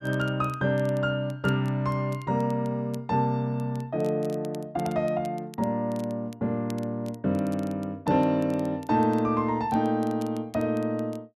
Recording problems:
crackling; vinyl, SNR 26 dB

